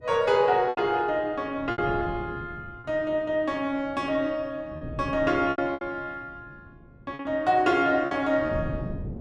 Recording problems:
wind noise; below 230 Hz, SNR 14 dB
lost packets; 7% of the sound replaced, filled with repeated pitch periods

